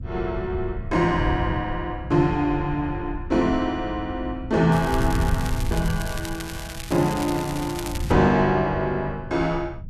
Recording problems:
wind on the microphone; below 110 Hz, SNR 8 dB
crackling; from 4.5 to 8 s; loose cable, SNR 13 dB

